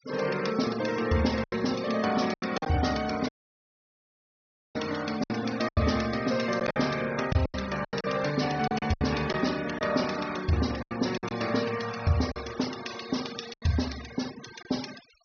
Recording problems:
treble cut off; nothing above 6.4 kHz
noise reduction artefacts; signal-to-artefact ratio 13 dB
lost packets; 8% of the sound replaced, filled with silence
audio cutting out; at 3.5 s for 1.5 s

